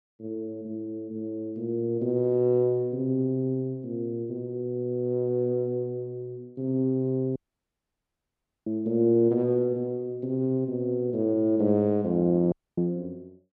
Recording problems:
audio cutting out; at 7.5 s for 1.5 s and at 13 s

